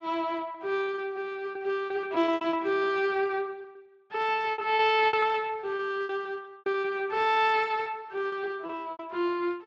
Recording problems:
codec artefacts; Speex, log-spectral distance 2 dB
packet loss; 14% of the sound replaced, filled with repeated pitch periods

